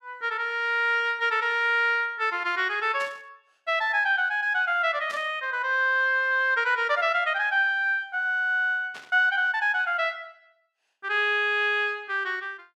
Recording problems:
burst of static; at 3 s, at 5 s and at 9 s; peak -13 dB vs average level

